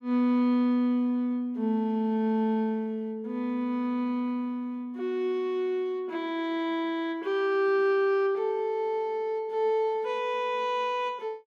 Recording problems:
none

